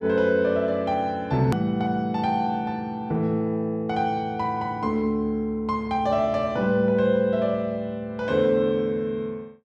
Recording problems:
hard cut with a click; at 1.5 s

